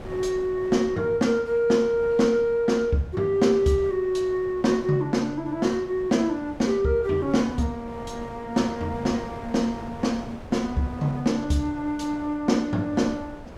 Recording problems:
wind noise; below 650 Hz, SNR 17 dB

